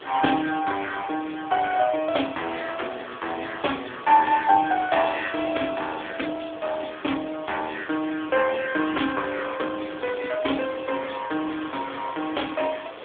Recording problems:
telephone audio; 240 Hz to 3.5 kHz, AMR-NB
background hiss; SNR 15 dB

